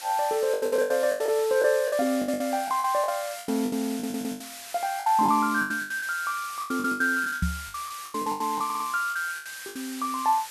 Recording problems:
background hiss; slope +3 dB per octave, SNR 12 dB
lost packets; 19% of the sound replaced, filled with the last packet
audio stuttering; at 4 s and at 8.5 s
microphone thump; at 7.5 s; peak +3 dB vs average level

